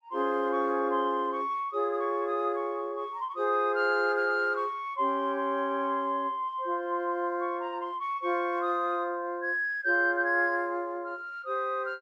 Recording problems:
none

